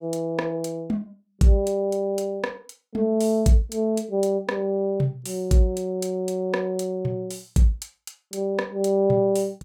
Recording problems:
none

